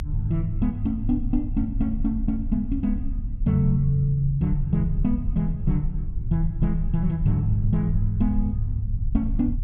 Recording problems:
rumble; below 72 Hz, strongest tone 30 Hz, SNR 5 dB

